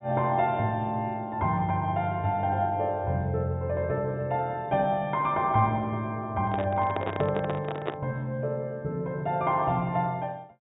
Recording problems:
treble missing; nothing above 4 kHz
microphone handling noise; from 6.5 to 8 s; peak 0 dB vs average level

